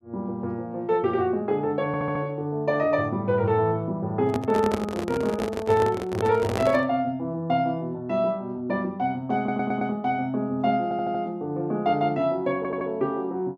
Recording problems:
stutter; 4 times, first at 2 s
microphone handling noise; from 4.5 to 7 s; peak +2 dB vs average level

